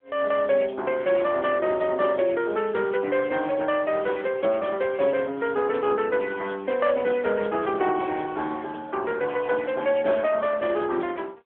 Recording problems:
telephone audio; 300 Hz to 3.4 kHz, AMR-NB

